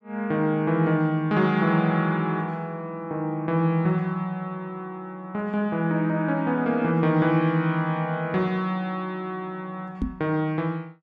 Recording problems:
microphone bump; at 10 s; peak +1 dB vs average level

